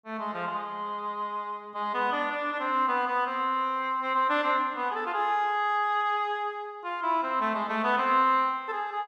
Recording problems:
none

